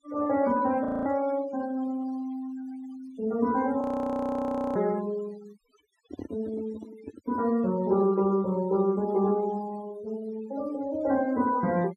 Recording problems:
noise reduction artefacts; signal-to-artefact ratio 20 dB
audio freezing; at 1 s and at 4 s for 1 s
microphone handling noise; from 6 to 7.5 s; peak -6 dB vs average level

